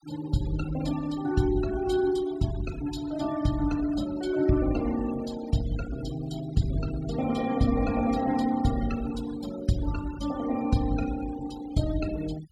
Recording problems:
denoising artefacts; signal-to-artefact ratio 16 dB

